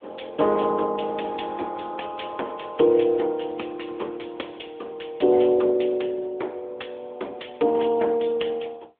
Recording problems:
telephone audio; 260 Hz to 3.5 kHz, AMR-NB

